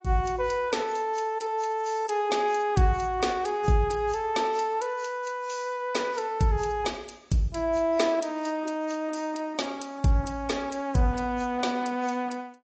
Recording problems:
lossy compression; AAC, log-spectral distance 3 dB, nothing above 7.6 kHz

